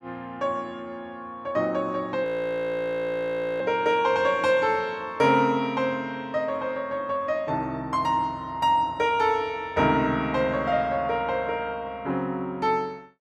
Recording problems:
audio freezing; at 2.5 s for 1.5 s

